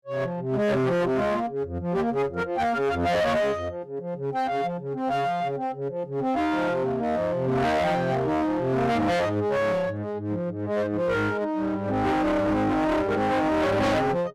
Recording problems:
distorted audio; hard clipping, uneven, signal-to-distortion ratio 5 dB

